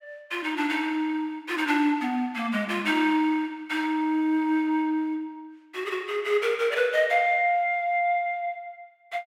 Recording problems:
none

